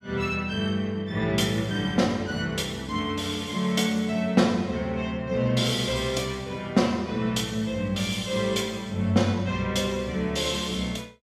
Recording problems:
none

